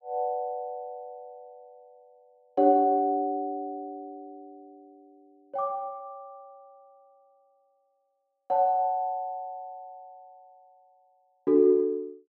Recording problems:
none

